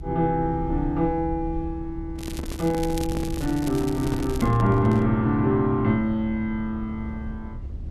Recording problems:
rumble; below 72 Hz, SNR 12 dB
microphone handling noise; from 2 to 5 s; peak -3 dB vs average level
crackle; from 2 to 4.5 s; loose cable, SNR 17 dB

